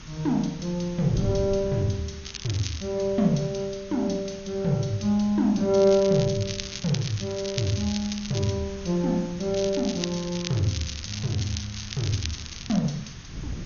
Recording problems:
codec artefacts; MP2, log-spectral distance 11 dB, nothing above 6.7 kHz
hiss; SNR 19 dB
wind on the microphone; below 190 Hz, SNR 16 dB
crackle; at 2 s, from 5.5 to 8.5 s and from 9.5 to 13 s; loose cable, SNR 10 dB

